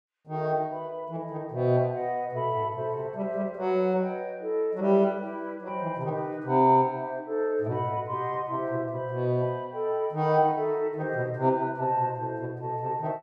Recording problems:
none

